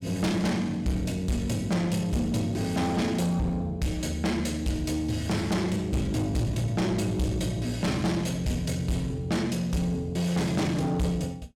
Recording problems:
distortion; soft clipping, signal-to-distortion ratio 8 dB

